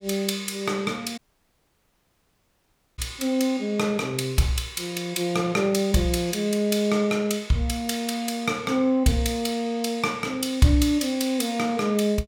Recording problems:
dropout; at 1 s for 2 s

